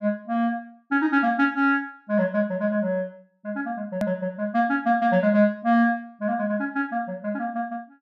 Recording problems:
edit click; at 4 s

